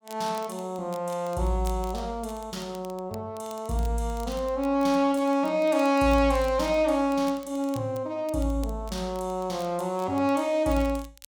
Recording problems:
crackle; vinyl, SNR 24 dB

